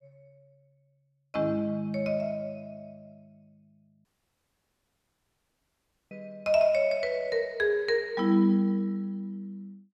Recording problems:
dropout; at 4 s for 2 s

